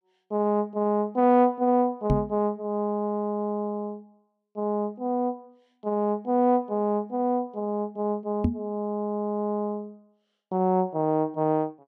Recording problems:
microphone bump; at 2 s and at 8.5 s; peak +6 dB vs average level

